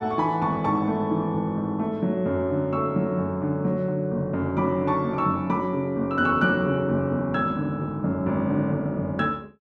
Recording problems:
none

